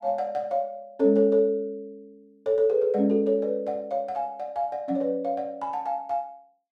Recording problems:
none

